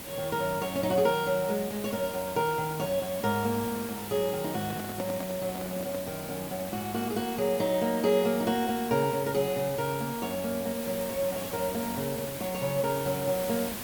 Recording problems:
hiss; slope -3 dB per octave, SNR 9 dB
handling noise; from 4.5 to 6 s; peak -4 dB vs average level

